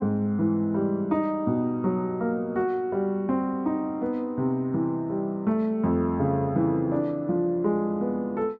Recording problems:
none

